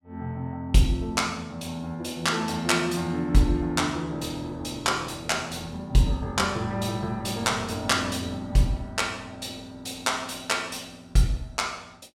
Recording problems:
none

